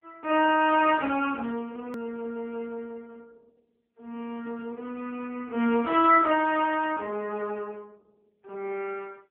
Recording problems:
telephone audio; 260 Hz to 3.3 kHz, AMR-NB
click at an edit; at 2 s

